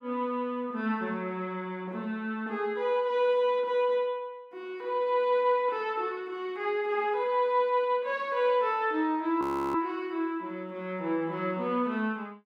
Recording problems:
audio freezing; at 9.5 s

